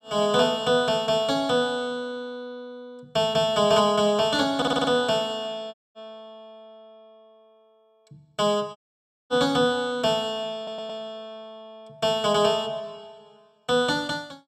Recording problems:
stutter; at 4.5 s and at 11 s
dropout; at 5.5 s and at 9 s for 0.5 s

